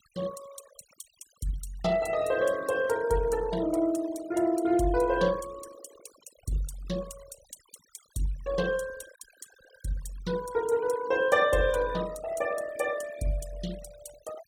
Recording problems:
denoising artefacts; signal-to-artefact ratio 19 dB

